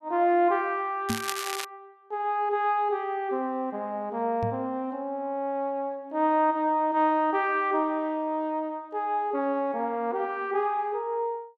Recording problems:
crackle; at 1 s; loose cable, SNR 7 dB
microphone bump; at 1 s and at 4.5 s; peak +1 dB vs average level

